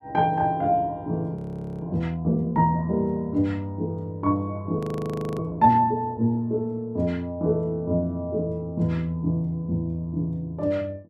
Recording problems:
frozen audio; at 1.5 s and at 5 s for 0.5 s

